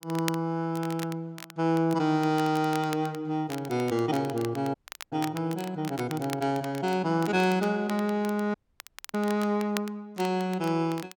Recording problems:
crackle; vinyl, SNR 16 dB
dropout; at 4.5 s and at 8.5 s for 0.5 s

